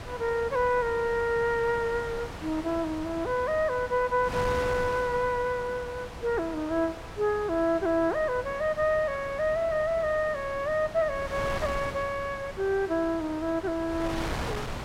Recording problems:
wind on the microphone; below 1.5 kHz, SNR 11 dB

